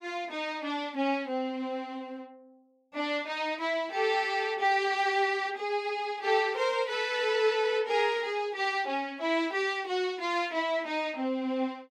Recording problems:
none

